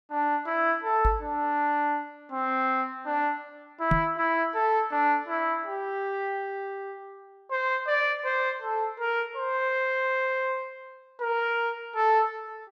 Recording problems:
knock on the microphone; at 1 s and at 4 s; peak +5 dB vs average level

